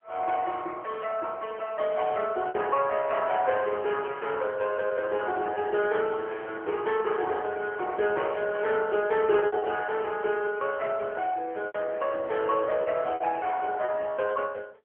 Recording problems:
telephone audio; 340 Hz to 3.1 kHz, AMR-NB
lost packets; 5% of the sound replaced, filled with repeated pitch periods

